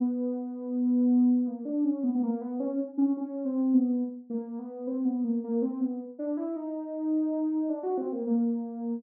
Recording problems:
treble cut off; nothing above 6.1 kHz

